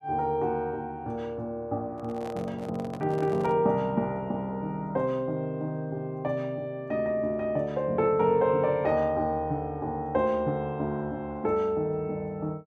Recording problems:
handling noise; from 2 to 3.5 s; peak -9 dB vs average level

